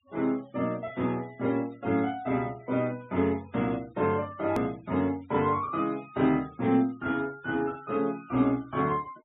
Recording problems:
treble missing; nothing above 4 kHz
noise reduction artefacts; signal-to-artefact ratio 25 dB
hard cut with a click; at 4.5 s

